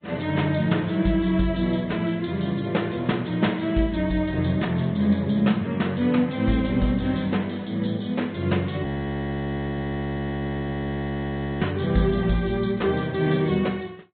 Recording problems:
low-pass filter; nothing above 3.9 kHz
codec artefacts; MP3, log-spectral distance 3 dB
audio freezing; at 9 s for 3 s

